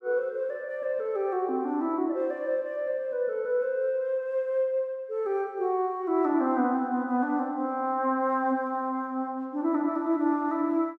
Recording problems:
none

